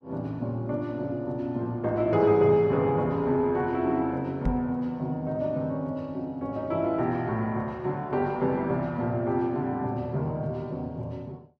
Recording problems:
microphone thump; at 4.5 s; peak +3 dB vs average level

